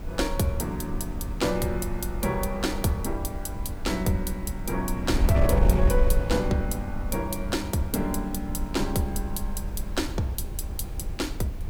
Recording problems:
hiss; slope -2 dB per octave, SNR 26 dB
wind noise; below 76 Hz, SNR 3 dB

